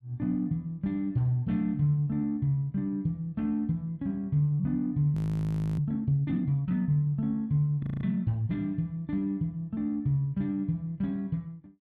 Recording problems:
frozen audio; at 5 s for 0.5 s and at 8 s

